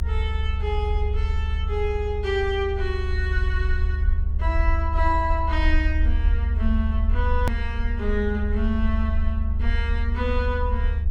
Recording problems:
electrical hum; 50 Hz, harmonics up to 900 Hz, SNR 11 dB
low-frequency rumble; below 74 Hz, SNR -3 dB
hard cut with a click; at 7.5 s

